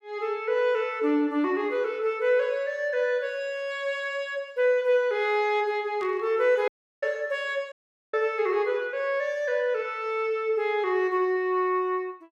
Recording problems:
burst of static; at 6 s; peak -15 dB vs average level
audio cutting out; at 6.5 s and at 7.5 s

